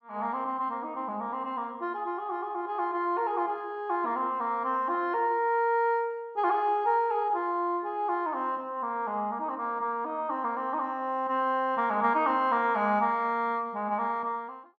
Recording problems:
none

